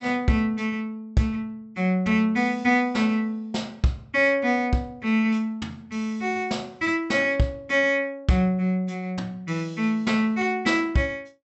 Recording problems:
low-pass filter; nothing above 7.9 kHz

